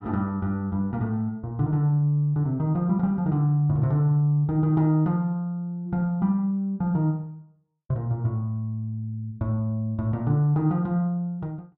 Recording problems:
none

